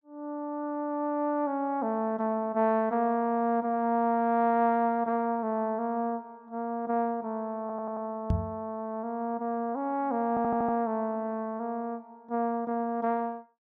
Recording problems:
audio stuttering; at 7.5 s and at 10 s
microphone thump; at 8.5 s; peak +5 dB vs average level

